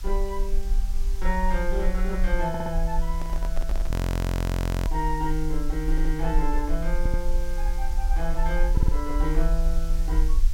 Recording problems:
hiss; slope 0 dB per octave, SNR 16 dB
low-frequency rumble; below 44 Hz, strongest tone 20 Hz, SNR -3 dB
stutter; 4 times, first at 2.5 s
microphone handling noise; at 3 s; peak -4 dB vs average level
audio freezing; at 4 s for 1 s

